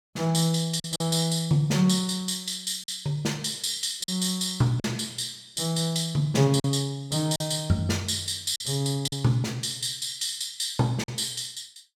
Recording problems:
lost packets; 3% of the sound replaced, filled with silence

